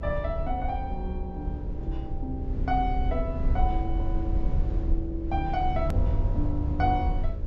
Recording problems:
low-pass filter; nothing above 8 kHz
hum; 60 Hz, harmonics up to 600 Hz, SNR 9 dB
rumble; below 72 Hz, SNR -1 dB
hard cut with a click; at 6 s

